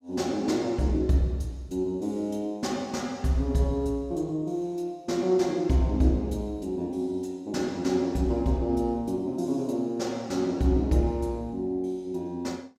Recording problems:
none

